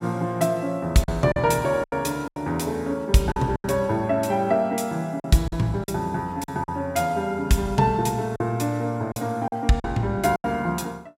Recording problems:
lost packets; 7% of the sound replaced, filled with silence

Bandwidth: 16 kHz